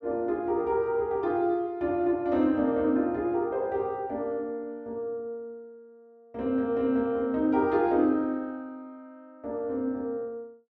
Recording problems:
none

